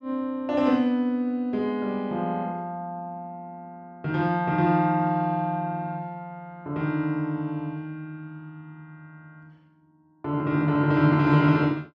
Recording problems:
none

